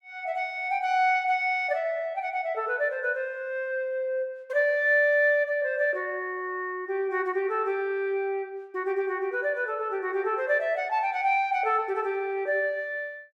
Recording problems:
none

